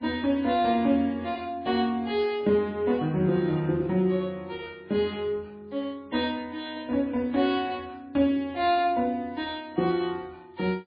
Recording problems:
codec artefacts; MP3, log-spectral distance 2 dB, nothing above 4.1 kHz
static burst; at 5 s; peak -15 dB vs average level

